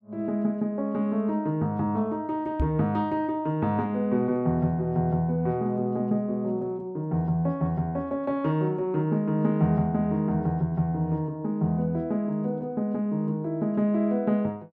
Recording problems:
microphone thump; at 2.5 s; peak +3 dB vs average level

